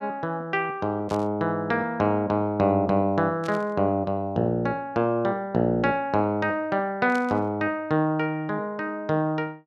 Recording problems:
static burst; at 1 s, at 3.5 s and at 7 s; peak -11 dB vs average level

